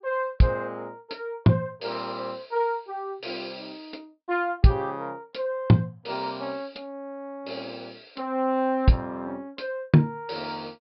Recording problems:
low-pass filter; nothing above 5.1 kHz

